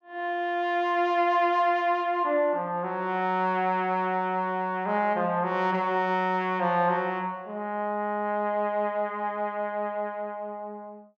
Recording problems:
none

